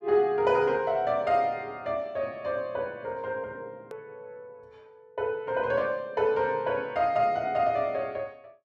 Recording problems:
edit click; at 4 s

